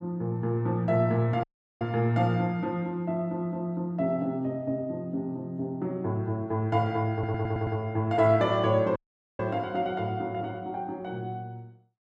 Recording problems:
audio cutting out; at 1.5 s and at 9 s
audio stuttering; at 7 s

